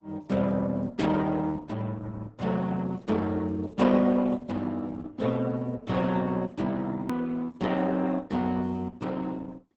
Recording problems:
lossy compression; Opus, then Opus, log-spectral distance 3 dB, nothing above 18.3 kHz
hard cut with a click; at 7 s

